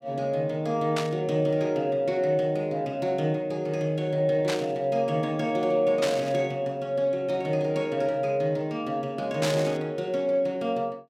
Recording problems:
burst of static; 4 times, first at 1 s; peak 0 dB vs average level

